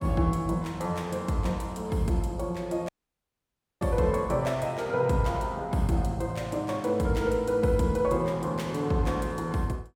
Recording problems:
dropout; at 3 s for 1 s

